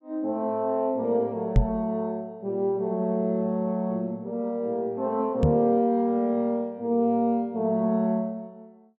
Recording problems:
knock on the microphone; at 1.5 s and at 5.5 s; peak +9 dB vs average level

